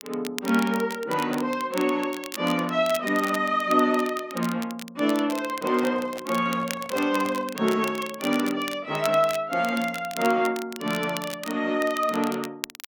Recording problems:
crackle; vinyl, SNR 13 dB
microphone handling noise; from 5.5 to 7.5 s; peak -12 dB vs average level

